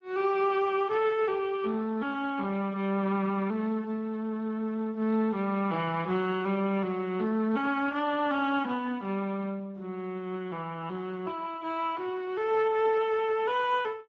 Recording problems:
codec artefacts; Speex, log-spectral distance 2 dB

